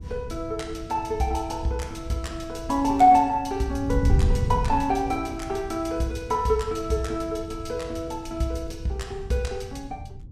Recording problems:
wind noise; below 110 Hz, SNR 8 dB

